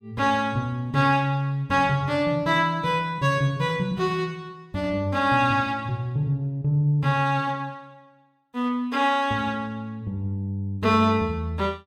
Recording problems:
none

